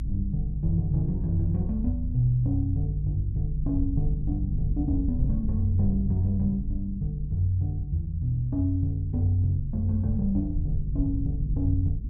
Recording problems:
low-frequency rumble; below 68 Hz, SNR 5 dB

